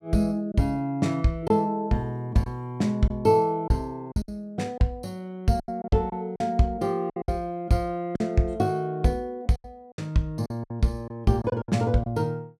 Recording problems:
packet loss; 8% of the sound replaced, filled with silence

